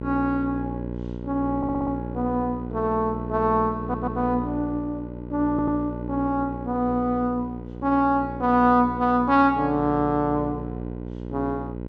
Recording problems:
hum; 60 Hz, harmonics up to 960 Hz, SNR 9 dB
stutter; at 1.5 s, at 4 s and at 5.5 s

